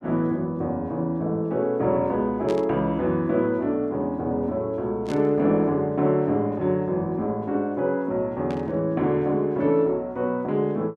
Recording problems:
static burst; at 2.5 s, at 5 s and at 8.5 s; peak -11 dB vs average level

